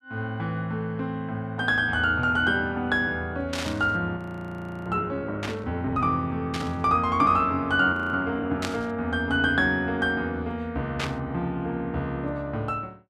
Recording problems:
burst of static; 5 times, first at 3.5 s; peak -1 dB vs average level
audio freezing; at 4 s for 0.5 s and at 8 s

